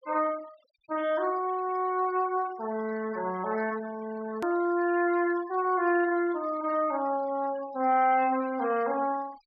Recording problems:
treble cut off; nothing above 5.5 kHz
denoising artefacts; signal-to-artefact ratio 22 dB
edit click; at 4.5 s

